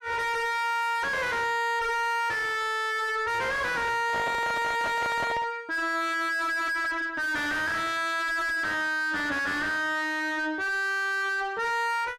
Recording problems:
distorted audio; soft clipping, signal-to-distortion ratio 5 dB
microphone handling noise; from 4 to 5.5 s; peak +3 dB vs average level

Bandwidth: 14.5 kHz